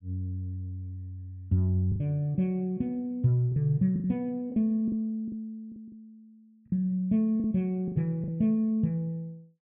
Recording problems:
lost packets; 7% of the sound replaced, filled with the last packet

